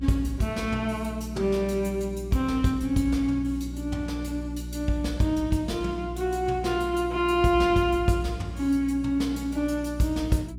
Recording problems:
electrical hum; 60 Hz, harmonics up to 360 Hz, SNR 11 dB

